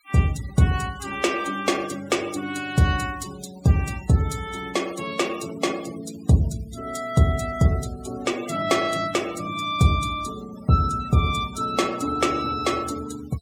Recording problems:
noise reduction artefacts; signal-to-artefact ratio 17 dB

